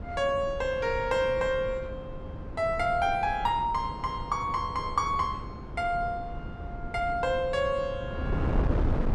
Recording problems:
wind on the microphone; below 260 Hz, SNR 8 dB

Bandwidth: 12.5 kHz